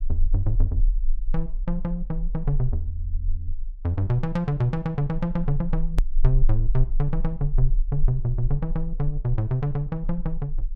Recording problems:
low-frequency rumble; below 34 Hz, strongest tone 20 Hz, SNR 3 dB
edit click; at 6 s

